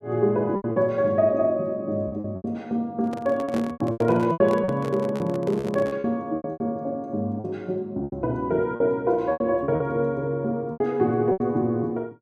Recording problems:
lost packets; 12% of the sound replaced, filled with repeated pitch periods
handling noise; from 3 to 6 s; peak -4 dB vs average level

